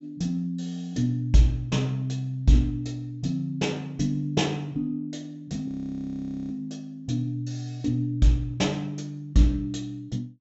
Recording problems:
treble cut off; nothing above 7.7 kHz
frozen audio; at 5.5 s for 1 s

